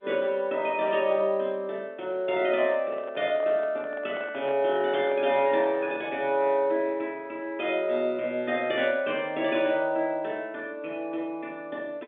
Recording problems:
phone line; 220 Hz to 3.5 kHz, G.711
microphone handling noise; from 2.5 to 6 s; peak -8 dB vs average level

